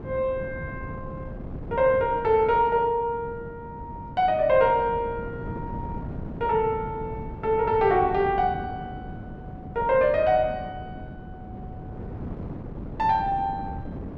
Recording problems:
wind on the microphone; below 290 Hz, SNR 13 dB

